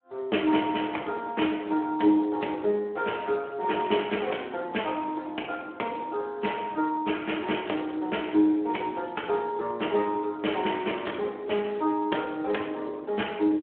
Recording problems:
phone line; 240 Hz to 3.3 kHz, Speex

